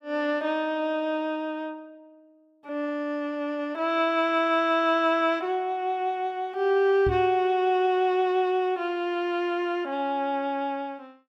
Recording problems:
microphone thump; at 7 s; peak -2 dB vs average level

